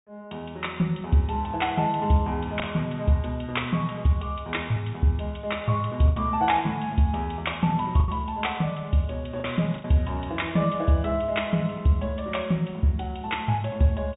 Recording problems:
treble cut off; nothing above 3.8 kHz
packet loss; 2% of the sound replaced, filled with the last packet

